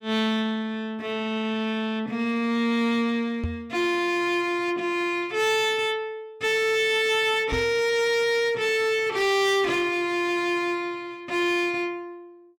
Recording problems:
distortion; hard clipping, signal-to-distortion ratio 11 dB
knock on the microphone; at 3.5 s and at 7.5 s; peak -2 dB vs average level

